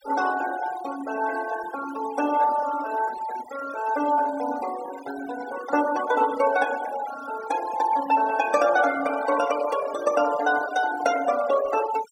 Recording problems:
noise reduction artefacts; signal-to-artefact ratio 14 dB

